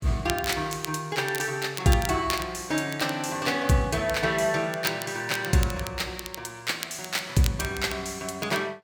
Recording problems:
crackle; vinyl, SNR 12 dB

